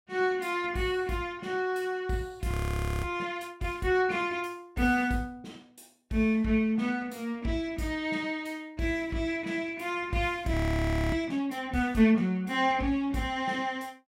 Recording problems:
audio freezing; at 2.5 s for 0.5 s and at 11 s for 0.5 s

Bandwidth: 16 kHz